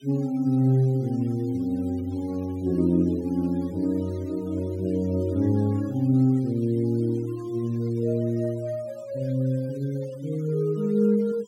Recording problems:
denoising artefacts; signal-to-artefact ratio 28 dB

